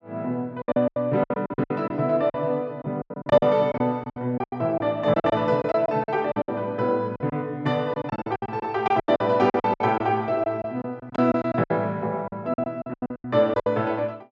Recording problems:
lost packets; 17% of the sound replaced, filled with silence

